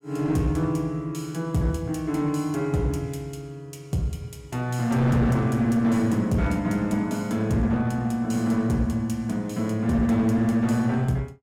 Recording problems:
distorted audio; hard clipping, uneven, signal-to-distortion ratio 11 dB

